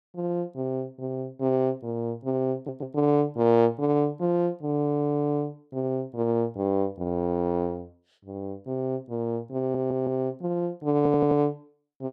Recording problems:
audio stuttering; 4 times, first at 2.5 s

